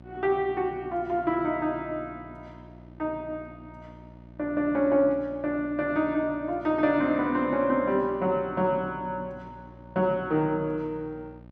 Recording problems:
hum; 60 Hz, harmonics up to 1.3 kHz, SNR 21 dB

